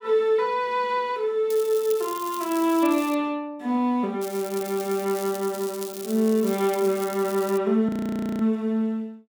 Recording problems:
crackling; from 1.5 to 3 s and from 4 to 7.5 s; loose cable, SNR 14 dB
audio freezing; at 8 s for 0.5 s

